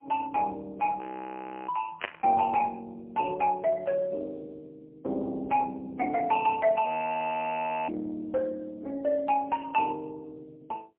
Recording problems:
phone line; 220 Hz to 3.5 kHz, AMR-NB, then MP3
frozen audio; at 1 s for 0.5 s and at 7 s for 1 s
static burst; at 2 s; peak +3 dB vs average level

